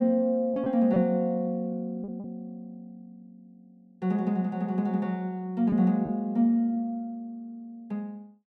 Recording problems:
lost packets; 3% of the sound replaced, filled with repeated pitch periods

